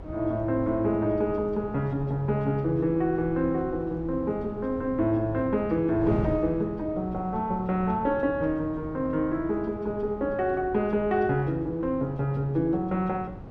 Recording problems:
electrical hum; 60 Hz, harmonics up to 660 Hz, SNR 23 dB
wind noise; below 320 Hz, SNR 13 dB

